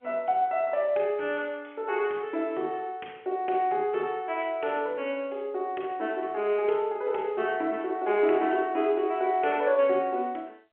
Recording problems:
phone line; 280 Hz to 3.2 kHz, G.711

